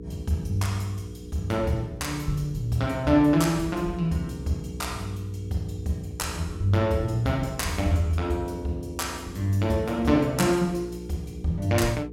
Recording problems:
hum; 60 Hz, harmonics up to 480 Hz, SNR 14 dB

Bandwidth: 16 kHz